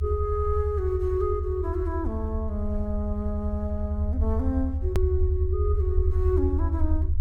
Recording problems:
low-frequency rumble; below 80 Hz, SNR -2 dB
click at an edit; at 5 s

